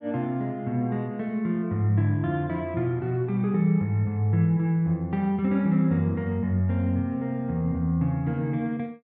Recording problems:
none

